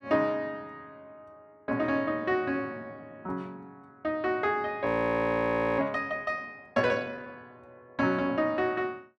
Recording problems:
audio freezing; at 5 s for 1 s

